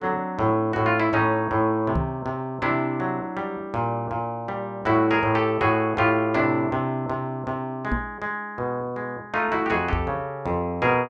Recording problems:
microphone bump; at 2 s, at 8 s and at 10 s; peak +2 dB vs average level

